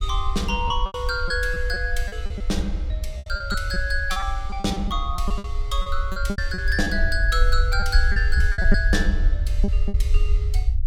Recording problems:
low-frequency rumble; below 58 Hz, SNR 0 dB
lost packets; 11% of the sound replaced, filled with repeated pitch periods

